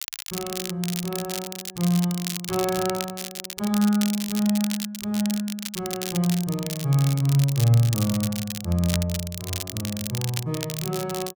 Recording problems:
crackling; vinyl, SNR 7 dB

